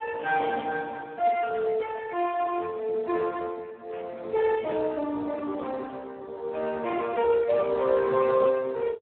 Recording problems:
phone line; 260 Hz to 2.3 kHz, Speex
burst of static; at 2.5 s and at 4 s; peak -17 dB vs average level

